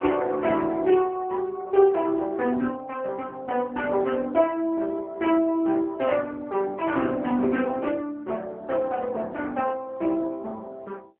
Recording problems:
telephone audio; 260 Hz to 3.1 kHz, AMR-NB

